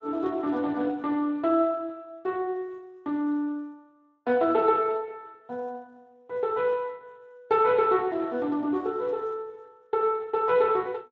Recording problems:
codec artefacts; Speex, log-spectral distance 2 dB

